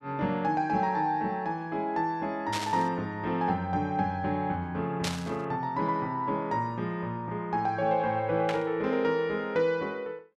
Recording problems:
burst of static; at 2.5 s, at 5 s and at 8.5 s; peak +1 dB vs average level

